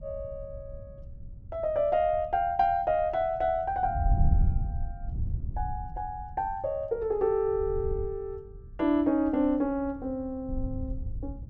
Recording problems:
wind noise; below 88 Hz, SNR 6 dB

